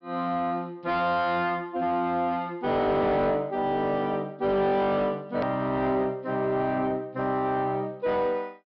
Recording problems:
treble missing; nothing above 5.5 kHz
distortion; soft clipping, signal-to-distortion ratio 10 dB
edit click; at 5.5 s

